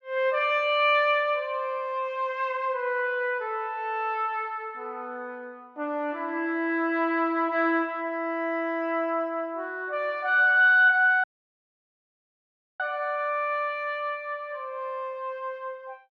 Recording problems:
audio cutting out; at 11 s for 1.5 s

